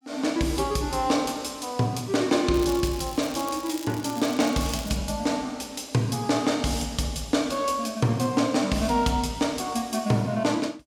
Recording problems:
crackle; from 2.5 to 5 s; loose cable, SNR 15 dB

